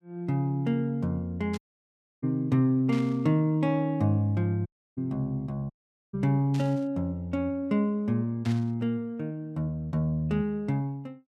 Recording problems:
burst of static; 4 times, first at 1.5 s; peak -11 dB vs average level
audio cutting out; at 1.5 s for 0.5 s, at 4.5 s and at 5.5 s

